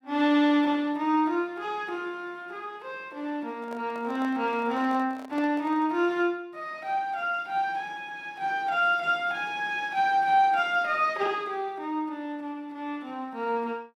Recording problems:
microphone handling noise; from 3.5 to 6 s; peak -11 dB vs average level

